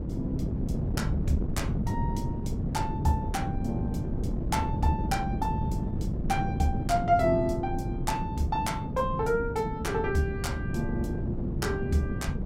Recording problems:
wind on the microphone; below 220 Hz, SNR 1 dB

